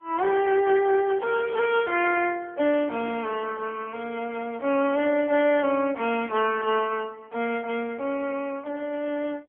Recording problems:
telephone audio; 240 Hz to 3.2 kHz, AMR-NB

